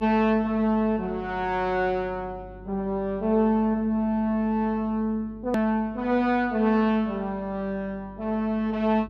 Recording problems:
hum; 50 Hz, harmonics up to 400 Hz, SNR 21 dB
click at an edit; at 5.5 s

